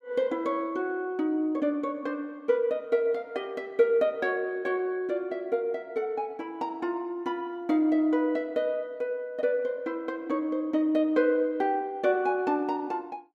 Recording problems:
none

